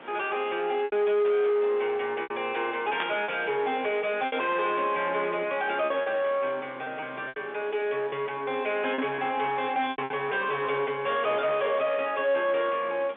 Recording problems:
phone line; 240 Hz to 3.6 kHz, G.711
distorted audio; soft clipping, signal-to-distortion ratio 9 dB
hiss; SNR 21 dB
packet loss; 5% of the sound replaced, filled with repeated pitch periods
static burst; at 3 s; peak +1 dB vs average level

